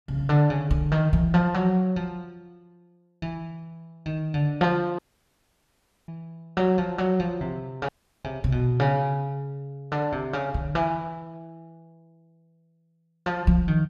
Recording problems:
audio cutting out; at 5 s for 1 s and at 8 s

